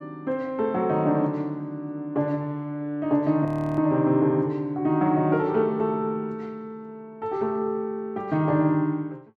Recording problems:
frozen audio; at 3.5 s

